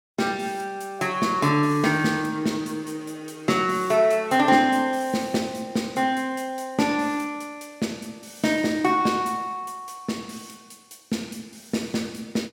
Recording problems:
none

